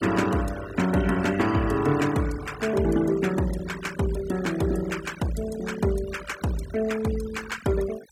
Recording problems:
denoising artefacts; signal-to-artefact ratio 15 dB

